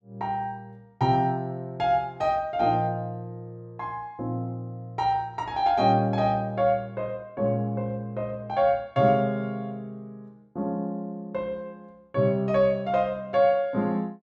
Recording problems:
none

